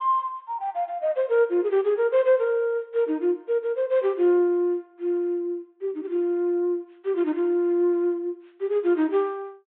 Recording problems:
low-pass filter; nothing above 4 kHz

